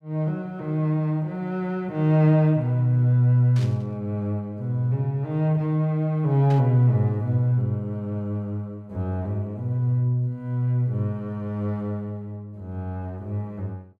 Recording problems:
static burst; at 3.5 s and at 6.5 s; peak -13 dB vs average level

